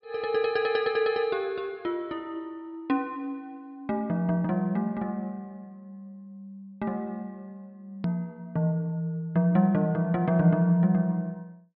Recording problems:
treble cut off; nothing above 5.2 kHz
hard cut with a click; at 8 s

